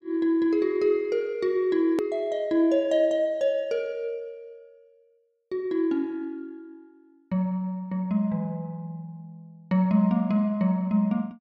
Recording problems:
click at an edit; at 2 s

